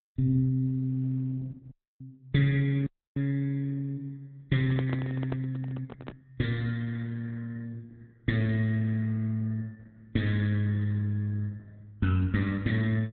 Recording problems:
lossy compression; Opus, log-spectral distance 2 dB, nothing above 3.8 kHz
audio cutting out; at 1.5 s and at 3 s
microphone handling noise; from 4.5 to 6 s; peak +1 dB vs average level

